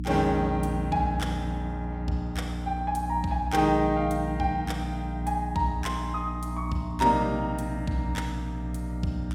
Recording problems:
hum; 60 Hz, harmonics up to 300 Hz, SNR 4 dB

